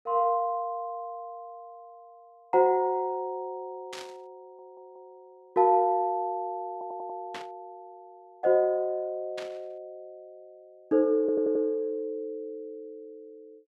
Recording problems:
burst of static; at 4 s, at 7.5 s and at 9.5 s; peak -8 dB vs average level
audio stuttering; at 4.5 s, at 6.5 s and at 11 s

